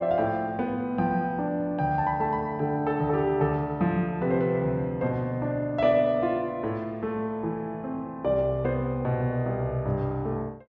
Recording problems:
treble missing; nothing above 7.4 kHz

